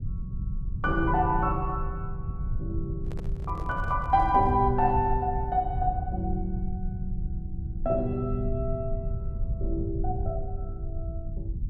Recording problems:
low-frequency rumble; below 92 Hz, SNR 5 dB
microphone handling noise; from 3 to 4.5 s; peak -12 dB vs average level

